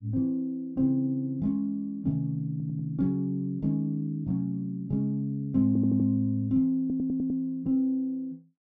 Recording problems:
audio stuttering; at 2.5 s, at 5.5 s and at 7 s

